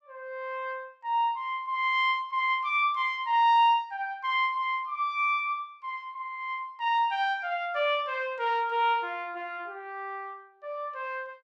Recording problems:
none

